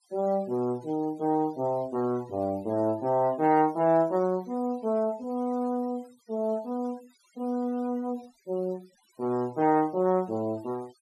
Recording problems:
denoising artefacts; signal-to-artefact ratio 26 dB

